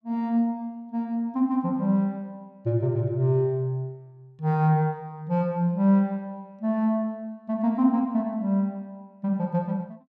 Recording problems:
none

